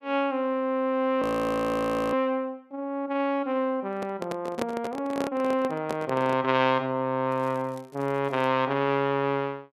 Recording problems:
frozen audio; at 1 s for 1 s
microphone handling noise; from 4 to 6.5 s; peak +1 dB vs average level
crackle; from 7.5 to 8.5 s; loose cable, SNR 29 dB

